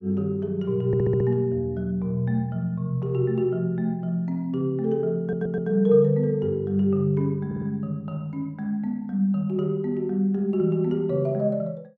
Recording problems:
audio stuttering; at 1 s, at 5 s and at 7.5 s

